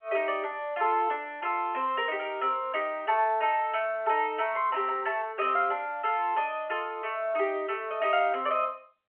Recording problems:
telephone audio; 320 Hz to 3.1 kHz, G.711

